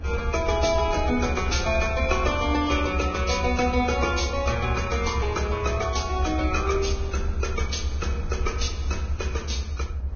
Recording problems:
lossy codec; Vorbis, log-spectral distance 5 dB, nothing above 6.5 kHz
rumble; below 76 Hz, strongest tone 66 Hz, SNR 4 dB

